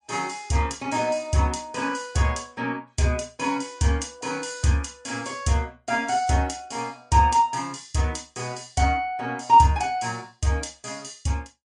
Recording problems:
lossy codec; MP3, log-spectral distance 3 dB, nothing above 9.5 kHz

